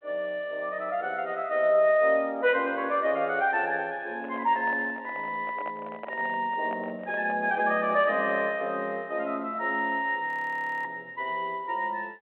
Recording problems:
phone line; 220 Hz to 3.3 kHz, G.726
microphone handling noise; from 4 to 7.5 s; peak -8 dB vs average level
audio freezing; at 10 s for 0.5 s

